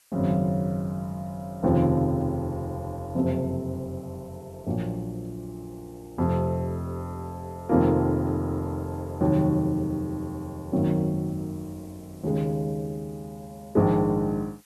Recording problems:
hiss; slope +2 dB per octave, SNR 30 dB

